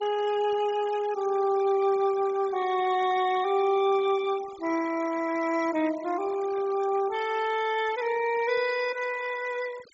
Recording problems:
treble cut off; nothing above 8 kHz
noise reduction artefacts; signal-to-artefact ratio 17 dB

